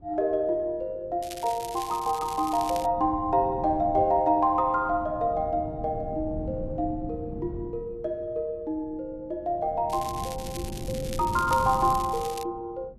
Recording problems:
wind on the microphone; below 220 Hz, SNR 12 dB
crackling; from 1 to 3 s and from 10 to 12 s; loose cable, SNR 14 dB

